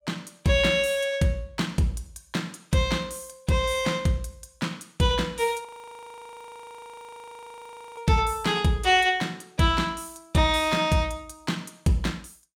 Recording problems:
audio freezing; at 5.5 s for 2.5 s

